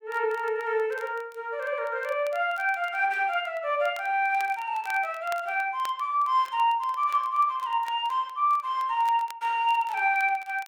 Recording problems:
crackling; vinyl, SNR 24 dB

